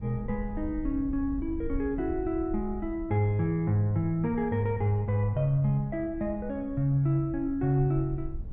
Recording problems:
low-frequency rumble; below 72 Hz, SNR 13 dB

